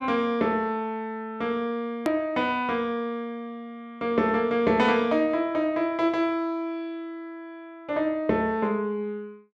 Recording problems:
click at an edit; at 2 s

